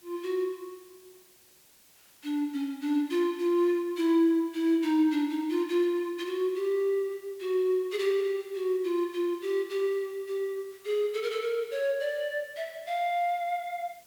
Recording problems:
hiss; slope -1 dB per octave, SNR 27 dB

